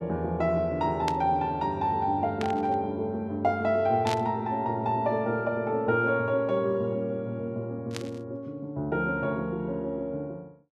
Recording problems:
burst of static; 4 times, first at 1 s; peak -2 dB vs average level

